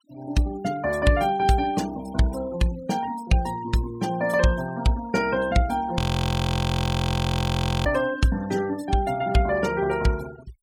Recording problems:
noise reduction artefacts; signal-to-artefact ratio 18 dB
audio freezing; at 6 s for 2 s

